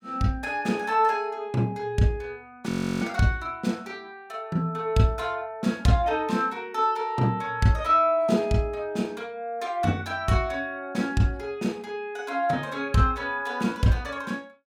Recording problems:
frozen audio; at 2.5 s

